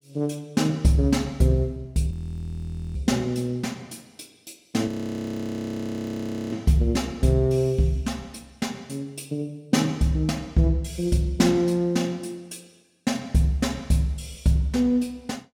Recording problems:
frozen audio; at 2 s for 1 s and at 5 s for 1.5 s

